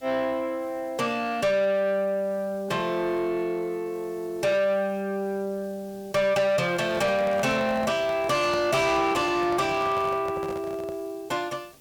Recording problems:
distortion; soft clipping, signal-to-distortion ratio 11 dB
background hiss; SNR 27 dB
microphone handling noise; from 6.5 to 11 s; peak -4 dB vs average level

